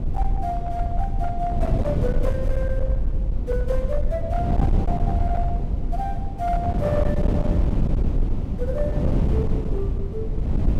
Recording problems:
distortion; hard clipping, uneven, signal-to-distortion ratio 12 dB
low-frequency rumble; below 56 Hz, SNR 1 dB
wind noise; below 170 Hz, SNR -3 dB

